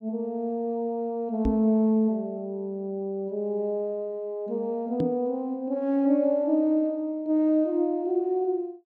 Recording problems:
microphone thump; at 1.5 s and at 5 s; peak +2 dB vs average level

